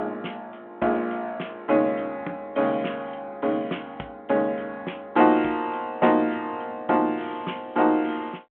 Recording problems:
phone line; 260 Hz to 3.4 kHz, G.726

